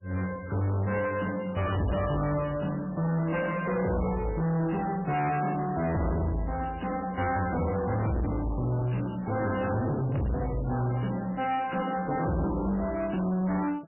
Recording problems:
codec artefacts; MP3, log-spectral distance 5 dB, nothing above 2.8 kHz
distortion; soft clipping, signal-to-distortion ratio 7 dB

